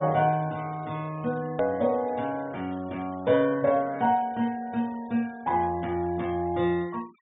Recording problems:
treble missing; nothing above 4 kHz
denoising artefacts; signal-to-artefact ratio 25 dB
click at an edit; at 1.5 s

